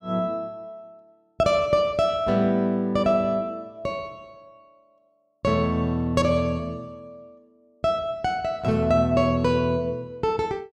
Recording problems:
none

